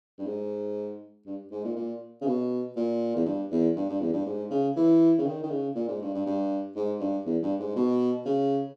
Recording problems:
none

